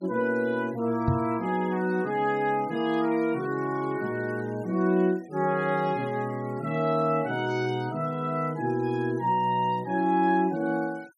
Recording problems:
noise reduction artefacts; signal-to-artefact ratio 27 dB
microphone thump; at 1 s; peak +4 dB vs average level

